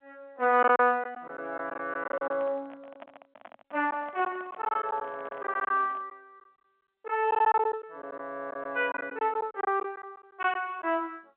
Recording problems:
telephone audio; 280 Hz to 3.7 kHz, G.711
lost packets; 9% of the sound replaced, filled with silence
microphone handling noise; from 2 to 6 s; peak -12 dB vs average level

